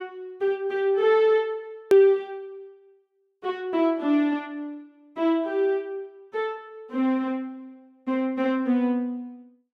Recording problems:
edit click; at 2 s

